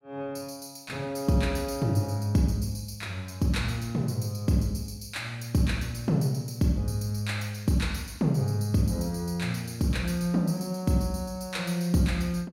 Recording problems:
none

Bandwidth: 16.5 kHz